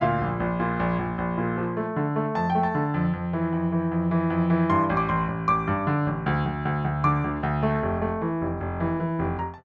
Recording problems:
low-pass filter; nothing above 8 kHz

